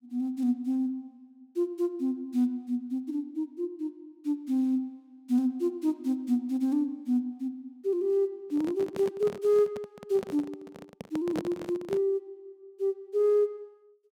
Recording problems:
handling noise; from 8.5 to 12 s; peak 0 dB vs average level

